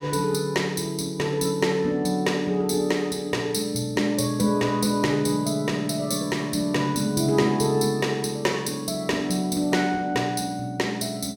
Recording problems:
none

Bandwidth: 17 kHz